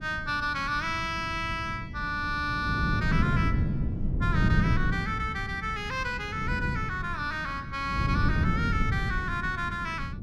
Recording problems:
wind noise; below 180 Hz, SNR 1 dB

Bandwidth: 14.5 kHz